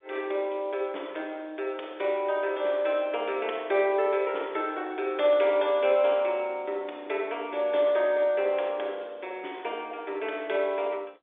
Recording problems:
phone line; 300 Hz to 3.7 kHz, G.711

